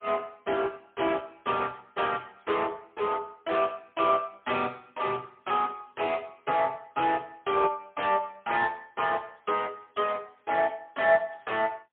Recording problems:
telephone audio; 220 Hz to 3.5 kHz, AMR-NB, then MP3

